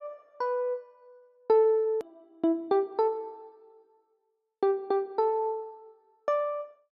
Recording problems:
hard cut with a click; at 2 s

